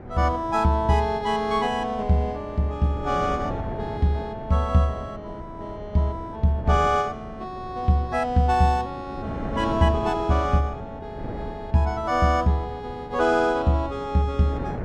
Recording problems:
wind noise; below 420 Hz, SNR 13 dB

